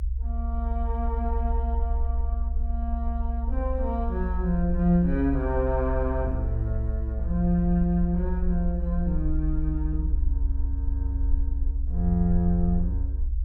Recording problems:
rumble; below 64 Hz, SNR 0 dB

